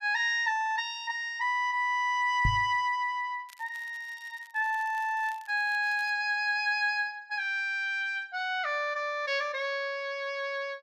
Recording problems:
knock on the microphone; at 2.5 s; peak +4 dB vs average level
crackle; from 3.5 to 6 s; loose cable, SNR 27 dB

